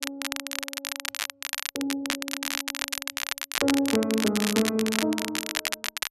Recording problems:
crackle; vinyl, SNR 2 dB

